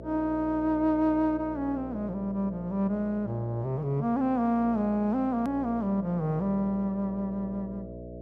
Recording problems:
hum; 60 Hz, harmonics up to 660 Hz, SNR 14 dB
edit click; at 5.5 s

